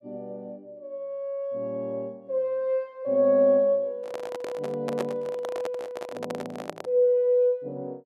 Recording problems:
microphone handling noise; from 4 to 7 s; peak -1 dB vs average level

